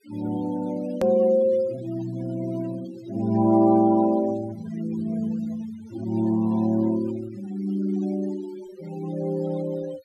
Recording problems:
denoising artefacts; signal-to-artefact ratio 20 dB
hard cut with a click; at 1 s

